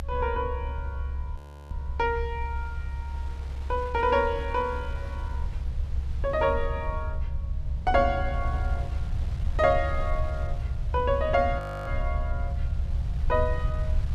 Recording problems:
rumble; below 70 Hz, SNR 4 dB
wind on the microphone; below 2.6 kHz, SNR 22 dB
frozen audio; at 1.5 s and at 12 s

